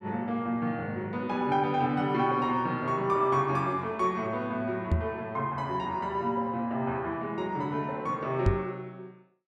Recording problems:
microphone thump; at 5 s and at 8.5 s; peak +7 dB vs average level

